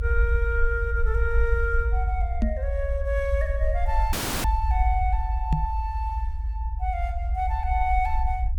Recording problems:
rumble; below 68 Hz, strongest tone 52 Hz, SNR -2 dB
microphone thump; at 2.5 s and at 5.5 s; peak +8 dB vs average level
audio cutting out; at 4 s

